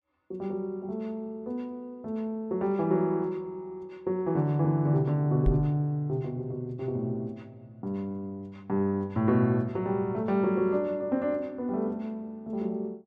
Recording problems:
knock on the microphone; at 5.5 s; peak +6 dB vs average level

